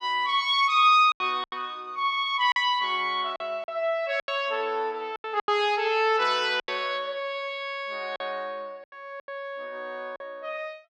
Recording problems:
lost packets; 8% of the sound replaced, filled with silence

